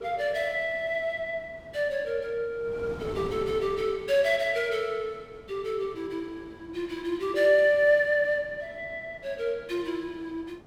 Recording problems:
wind on the microphone; below 630 Hz, SNR 19 dB

